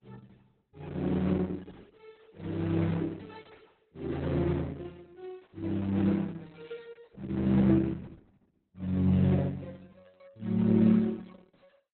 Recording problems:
lossy compression; Opus, log-spectral distance 4 dB, nothing above 4 kHz

